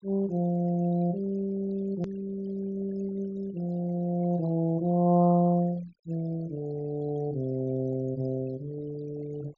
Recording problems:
treble missing; nothing above 7.2 kHz
noise reduction artefacts; signal-to-artefact ratio 22 dB
hard cut with a click; at 2 s

